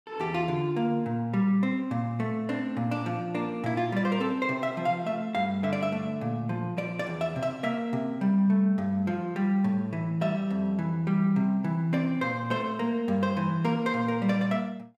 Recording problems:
none

